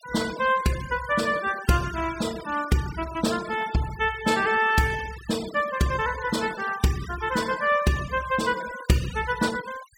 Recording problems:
denoising artefacts; signal-to-artefact ratio 15 dB

